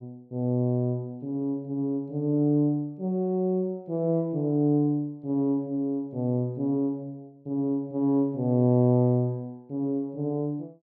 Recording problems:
none

